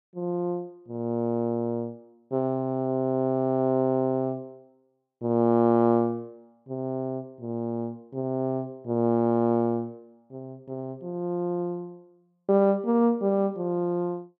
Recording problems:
none

